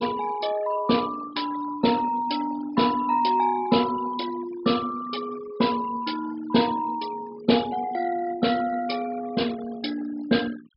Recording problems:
low-pass filter; nothing above 5.5 kHz
denoising artefacts; signal-to-artefact ratio 16 dB

